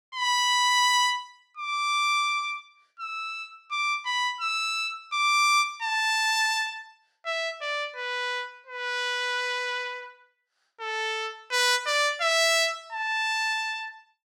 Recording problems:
none

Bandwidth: 16.5 kHz